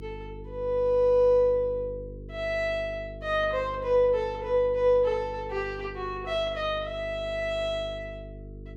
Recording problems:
hum; 50 Hz, harmonics up to 450 Hz, SNR 16 dB

